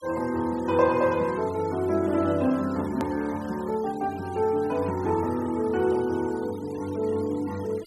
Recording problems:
noise reduction artefacts; signal-to-artefact ratio 21 dB
edit click; at 3 s

